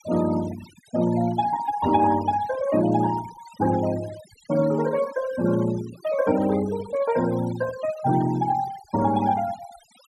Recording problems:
noise reduction artefacts; signal-to-artefact ratio 16 dB

